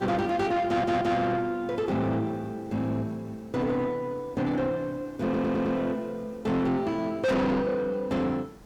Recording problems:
distortion; soft clipping, signal-to-distortion ratio 7 dB
background hiss; SNR 24 dB
audio stuttering; at 0.5 s and at 5 s

